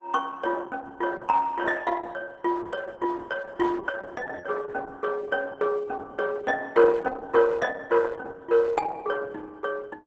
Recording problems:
lossy compression; Opus, log-spectral distance 4 dB, nothing above 8 kHz

